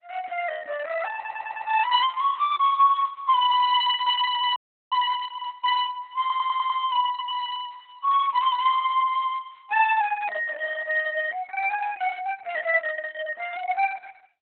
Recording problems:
lossy compression; Opus, log-spectral distance 3 dB, nothing above 4 kHz
audio stuttering; at 1 s and at 6 s
frozen audio; at 4.5 s

